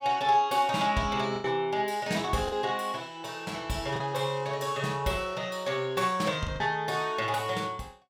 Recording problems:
packet loss; 3% of the sound replaced, filled with the last packet

